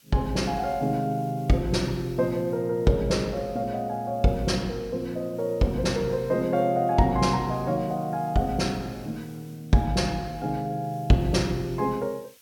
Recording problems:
hiss; SNR 28 dB

